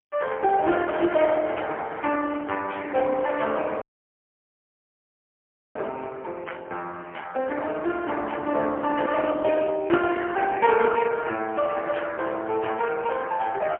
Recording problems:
phone line; 260 Hz to 3.2 kHz, AMR-NB, then MP3
dropout; at 4 s for 2 s

